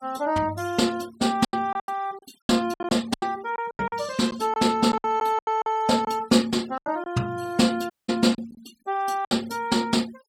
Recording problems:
noise reduction artefacts; signal-to-artefact ratio 22 dB
packet loss; 10% of the sound replaced, filled with silence
audio cutting out; at 8 s

